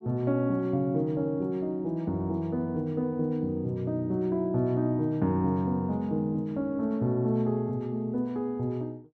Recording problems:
none

